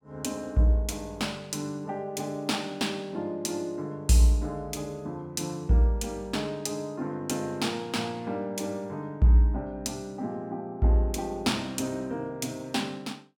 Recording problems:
none

